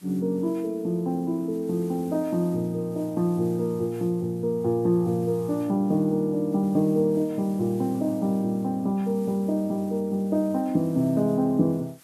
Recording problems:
hiss; SNR 27 dB

